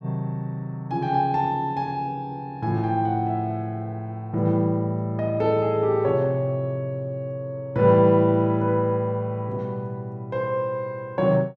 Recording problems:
none

